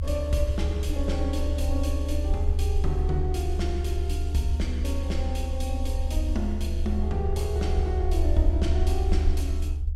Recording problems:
rumble; below 74 Hz, SNR -4 dB

